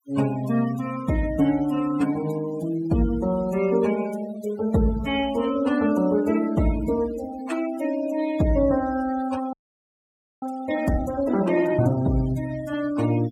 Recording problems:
noise reduction artefacts; signal-to-artefact ratio 16 dB
frozen audio; at 9.5 s for 1 s

